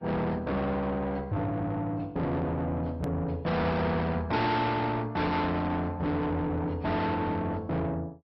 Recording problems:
treble cut off; nothing above 5.5 kHz
lossy compression; AAC, log-spectral distance 2 dB
distortion; soft clipping, signal-to-distortion ratio 6 dB
hard cut with a click; at 3 s

